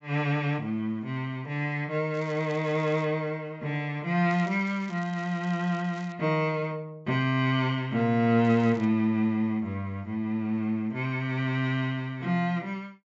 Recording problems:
low-pass filter; nothing above 7.6 kHz
crackling; at 2 s, from 4.5 to 6 s and at 8.5 s; loose cable, SNR 25 dB

